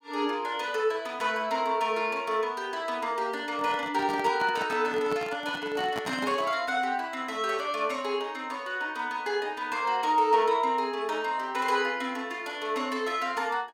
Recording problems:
handling noise; from 3.5 to 6.5 s; peak -4 dB vs average level

